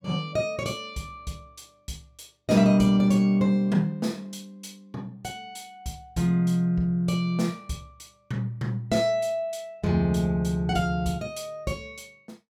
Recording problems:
none

